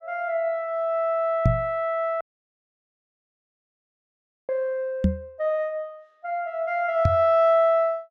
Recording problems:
microphone bump; at 1.5 s, at 5 s and at 7 s; peak +7 dB vs average level
audio cutting out; at 2 s for 2.5 s

